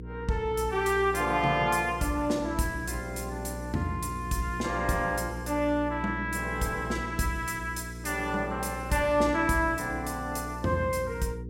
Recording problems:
hum; 60 Hz, harmonics up to 480 Hz, SNR 10 dB

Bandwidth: 16 kHz